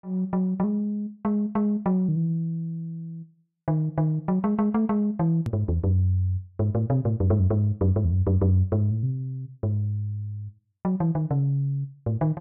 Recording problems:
hard cut with a click; at 5.5 s

